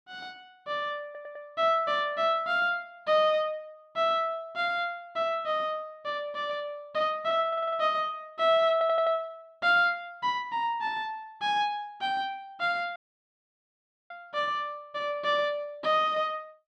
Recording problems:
stutter; at 1 s, at 7.5 s and at 8.5 s
audio cutting out; at 13 s for 1 s

